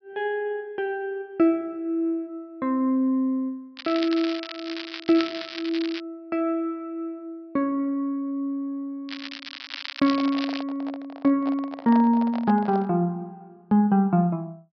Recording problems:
treble cut off; nothing above 5.5 kHz
crackle; from 4 to 6 s and from 9 to 11 s; loose cable, SNR 10 dB
microphone handling noise; from 10 to 13 s; peak -6 dB vs average level

